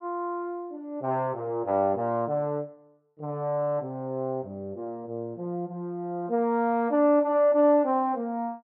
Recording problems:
none

